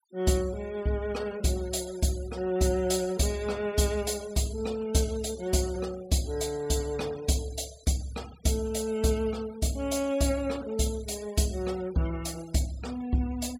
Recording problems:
noise reduction artefacts; signal-to-artefact ratio 20 dB

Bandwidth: 16 kHz